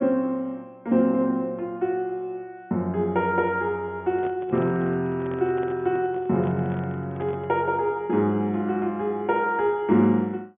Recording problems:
treble cut off; nothing above 3.5 kHz
handling noise; from 4 to 7.5 s; peak -10 dB vs average level

